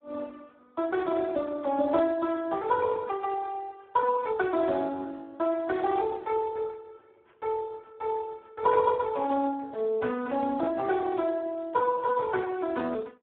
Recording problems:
telephone audio; 150 Hz to 2 kHz, Speex

